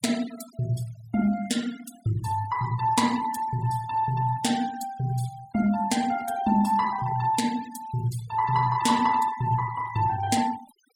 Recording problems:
denoising artefacts; signal-to-artefact ratio 17 dB

